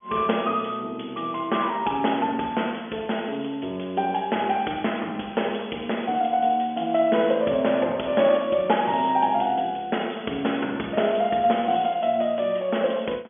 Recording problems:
phone line; 240 Hz to 3.5 kHz, G.711

